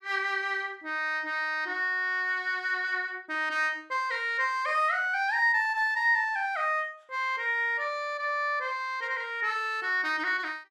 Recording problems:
none

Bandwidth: 14.5 kHz